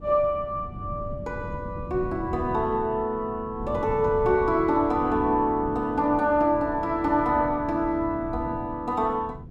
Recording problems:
wind on the microphone; below 190 Hz, SNR 13 dB

